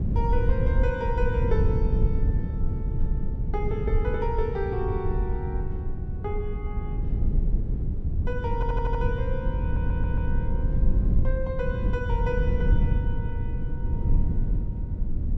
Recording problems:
rumble; below 96 Hz, SNR -5 dB
stutter; at 8.5 s and at 9.5 s

